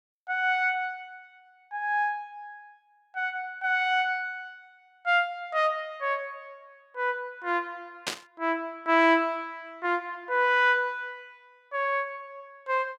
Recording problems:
burst of static; at 8 s; peak +2 dB vs average level

